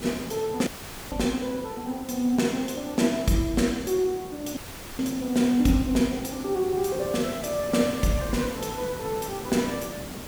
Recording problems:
hiss; slope -5 dB per octave, SNR 12 dB
dropout; at 0.5 s and at 4.5 s

